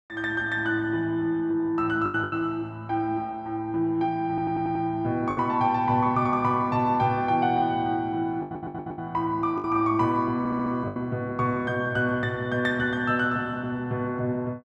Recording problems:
packet loss; 3% of the sound replaced, filled with the last packet
stutter; at 4.5 s, at 8.5 s and at 10 s

